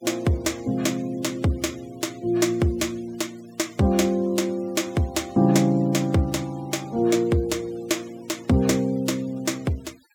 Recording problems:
denoising artefacts; signal-to-artefact ratio 24 dB

